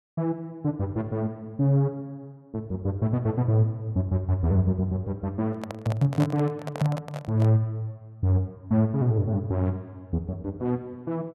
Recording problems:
microphone handling noise; from 5.5 to 7.5 s; peak -1 dB vs average level

